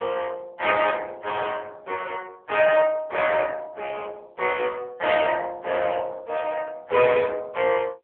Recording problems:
telephone audio; 370 Hz to 3.4 kHz, AMR-NB

